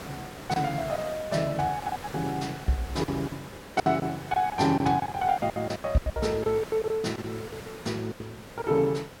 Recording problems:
hiss; slope -5 dB per octave, SNR 13 dB
lost packets; 15% of the sound replaced, filled with silence

